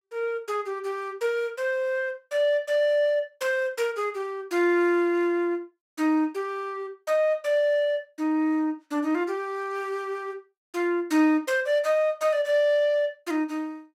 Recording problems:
none

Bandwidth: 16 kHz